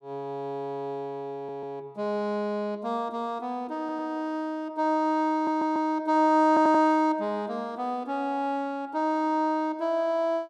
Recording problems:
stutter; 4 times, first at 1.5 s

